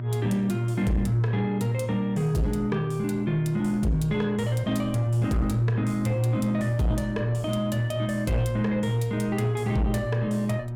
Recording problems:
distortion; soft clipping, signal-to-distortion ratio 11 dB
electrical hum; 60 Hz, harmonics up to 600 Hz, SNR 8 dB
wind on the microphone; below 330 Hz, SNR 22 dB

